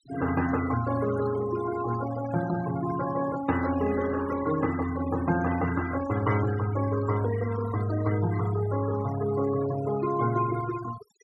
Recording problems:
noise reduction artefacts; signal-to-artefact ratio 12 dB

